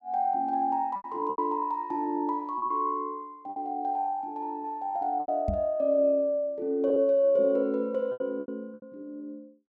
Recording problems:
lost packets; 7% of the sound replaced, filled with repeated pitch periods
knock on the microphone; at 5.5 s; peak +1 dB vs average level

